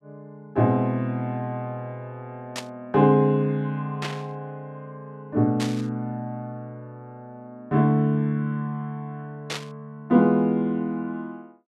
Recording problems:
static burst; 4 times, first at 2.5 s; peak -2 dB vs average level

